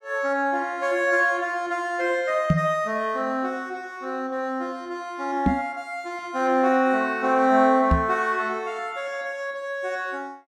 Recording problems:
microphone thump; at 2.5 s, at 5.5 s and at 8 s; peak +8 dB vs average level

